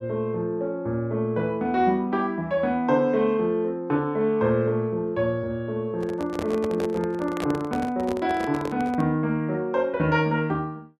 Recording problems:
microphone handling noise; from 6 to 9 s; peak -2 dB vs average level

